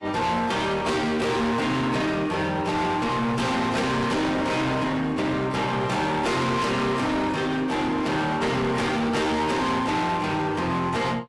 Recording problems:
lossy codec; AAC, log-spectral distance 2 dB, nothing above 11 kHz
distorted audio; hard clipping, uneven, signal-to-distortion ratio 6 dB

